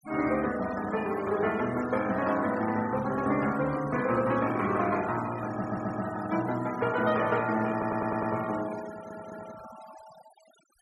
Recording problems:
noise reduction artefacts; signal-to-artefact ratio 15 dB
audio stuttering; at 5.5 s, at 7.5 s and at 9 s

